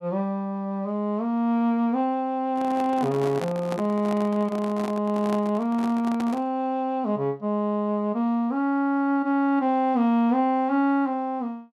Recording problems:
handling noise; from 2.5 to 6.5 s; peak -5 dB vs average level

